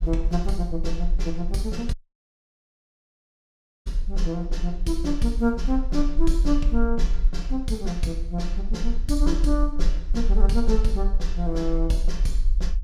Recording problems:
rumble; below 40 Hz, strongest tone 20 Hz, SNR 1 dB
dropout; at 2 s for 2 s

